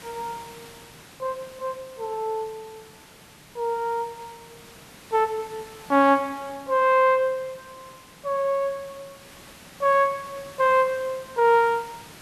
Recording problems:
hiss; slope -2 dB per octave, SNR 22 dB

